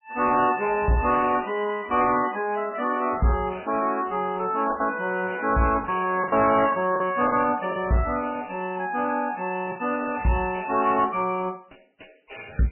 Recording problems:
codec artefacts; MP3, log-spectral distance 7 dB, nothing above 2.7 kHz
distortion; soft clipping, signal-to-distortion ratio 11 dB
packet loss; 4% of the sound replaced, filled with the last packet

